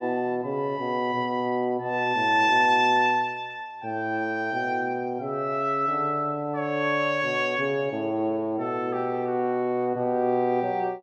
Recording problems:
none

